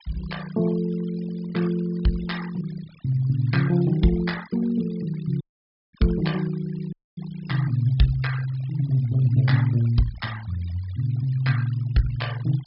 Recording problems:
treble missing; nothing above 5.5 kHz
denoising artefacts; signal-to-artefact ratio 19 dB
dropout; at 5.5 s for 0.5 s and at 7 s

